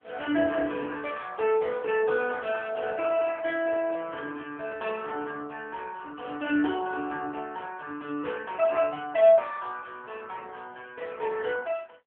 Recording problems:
phone line; 240 Hz to 3.5 kHz, AMR-NB
microphone handling noise; from 3 to 5 s; peak -14 dB vs average level

